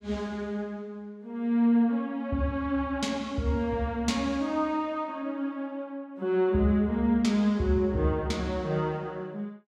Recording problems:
none

